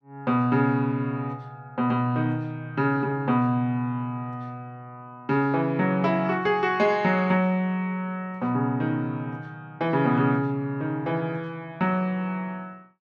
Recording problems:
none

